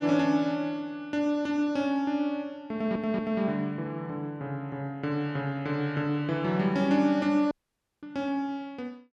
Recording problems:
stutter; at 2.5 s
dropout; at 7.5 s for 0.5 s

